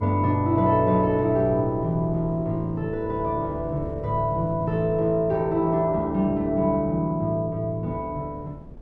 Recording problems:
wind on the microphone; below 260 Hz, SNR 18 dB

